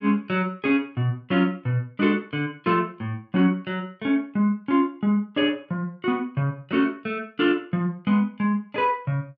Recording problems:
none

